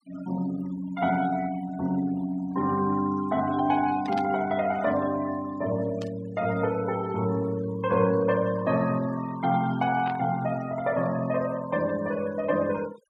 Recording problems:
denoising artefacts; signal-to-artefact ratio 19 dB
burst of static; at 4 s, at 6 s and at 10 s; peak -9 dB vs average level

